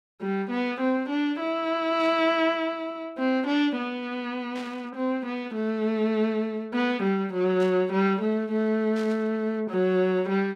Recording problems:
static burst; 4 times, first at 2 s; peak -12 dB vs average level

